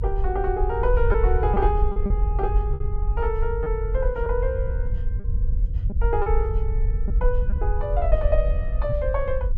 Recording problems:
low-frequency rumble; below 62 Hz, SNR -2 dB
packet loss; 4% of the sound replaced, filled with repeated pitch periods

